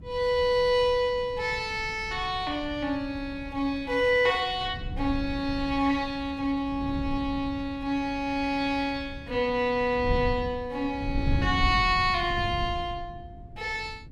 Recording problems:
wind on the microphone; below 130 Hz, SNR 11 dB

